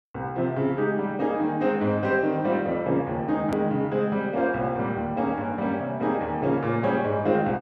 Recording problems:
edit click; at 3.5 s

